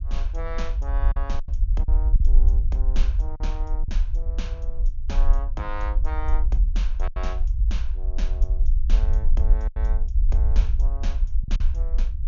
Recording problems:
low-pass filter; nothing above 7 kHz
rumble; below 50 Hz, SNR -13 dB
packet loss; 4% of the sound replaced, filled with silence

